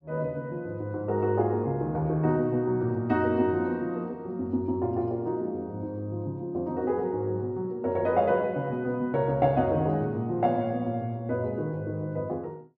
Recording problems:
none

